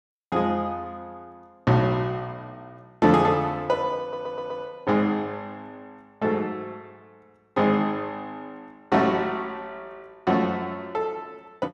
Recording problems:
audio stuttering; at 4 s

